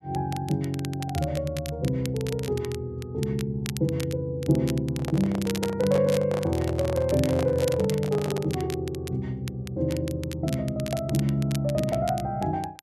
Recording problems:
crackling; vinyl, SNR 15 dB
microphone handling noise; from 5 to 8.5 s; peak -2 dB vs average level

